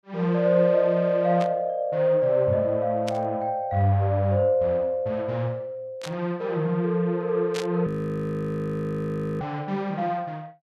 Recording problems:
burst of static; 4 times, first at 1.5 s; peak -5 dB vs average level
audio freezing; at 8 s for 1.5 s

